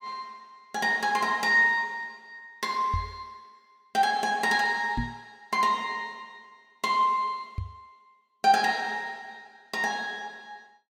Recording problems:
microphone thump; at 3 s, at 5 s and at 7.5 s; peak -1 dB vs average level

